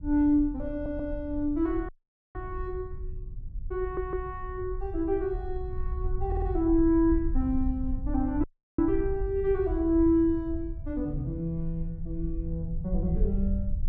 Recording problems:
rumble; below 66 Hz, SNR 7 dB
audio stuttering; at 0.5 s, at 4 s and at 6.5 s
dropout; at 2 s and at 8.5 s

